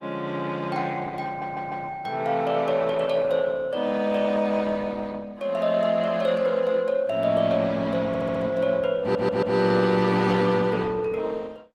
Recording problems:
codec artefacts; Opus, log-spectral distance 3 dB, nothing above 15.1 kHz
audio stuttering; at 1.5 s, at 8 s and at 9 s

